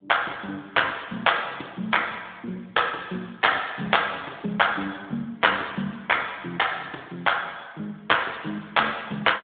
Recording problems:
phone line; 220 Hz to 3.6 kHz, AMR-NB

